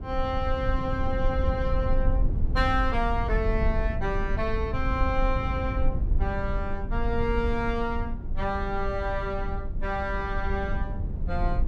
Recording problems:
rumble; below 72 Hz, SNR 1 dB

